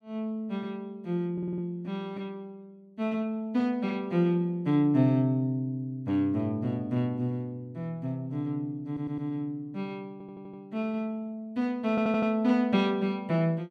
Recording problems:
audio stuttering; 4 times, first at 1.5 s

